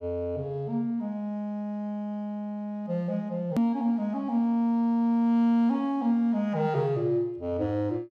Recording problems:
hard cut with a click; at 3.5 s

